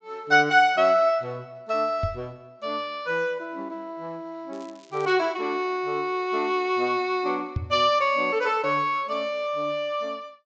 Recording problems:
treble cut off; nothing above 8 kHz
microphone bump; at 2 s and at 7.5 s; peak 0 dB vs average level
crackle; at 4.5 s; loose cable, SNR 29 dB

